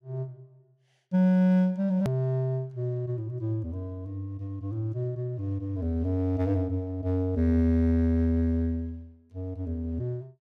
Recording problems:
edit click; at 2 s

